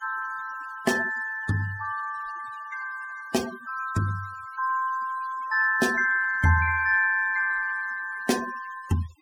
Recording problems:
denoising artefacts; signal-to-artefact ratio 18 dB

